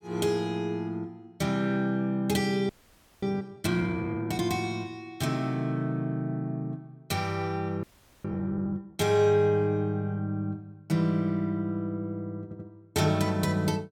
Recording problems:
frozen audio; at 2.5 s for 0.5 s and at 8 s
audio stuttering; at 12 s

